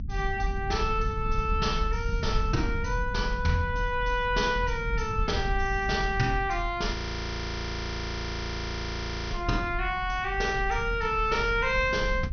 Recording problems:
low-pass filter; nothing above 6.2 kHz
low-frequency rumble; below 82 Hz, strongest tone 40 Hz, SNR 6 dB
audio freezing; at 7 s for 2.5 s

